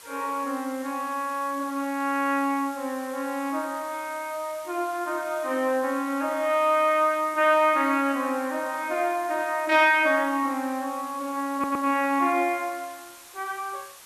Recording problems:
background hiss; SNR 20 dB
audio stuttering; at 12 s

